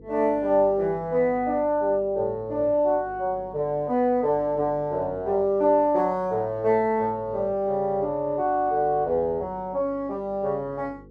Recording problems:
hum; 50 Hz, harmonics up to 500 Hz, SNR 24 dB

